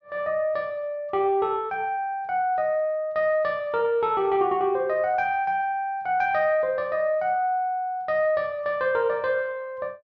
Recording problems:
none

